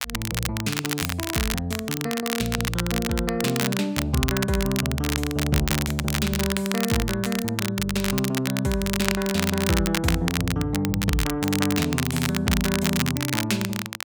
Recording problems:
crackling; vinyl, SNR 3 dB

